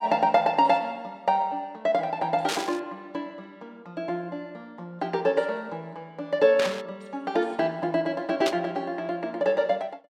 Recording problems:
static burst; at 2.5 s, at 6.5 s and at 8.5 s; peak +1 dB vs average level

